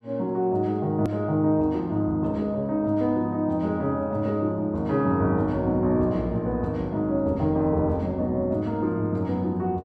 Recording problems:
edit click; at 1 s

